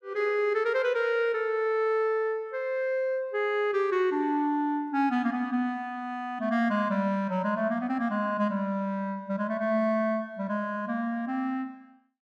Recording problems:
none

